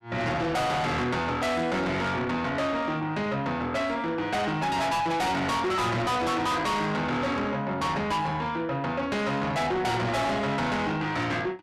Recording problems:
distortion; soft clipping, signal-to-distortion ratio 6 dB

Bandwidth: 13.5 kHz